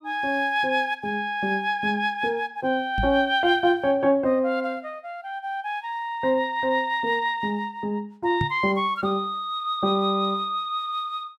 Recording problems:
knock on the microphone; at 3 s and at 8.5 s; peak +1 dB vs average level

